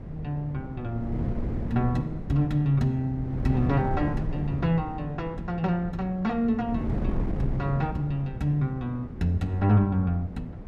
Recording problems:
wind on the microphone; below 220 Hz, SNR 7 dB

